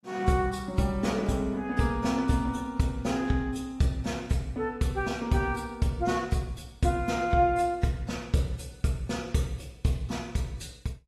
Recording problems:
lossy codec; AAC, log-spectral distance 3 dB, nothing above 12.7 kHz

